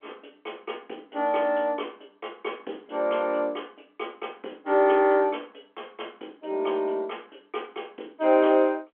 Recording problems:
telephone audio; 260 Hz to 3.4 kHz, G.711

